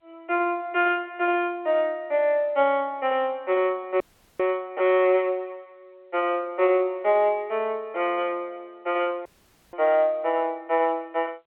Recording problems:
phone line; 320 Hz to 3.5 kHz, G.711
audio cutting out; at 4 s and at 9.5 s

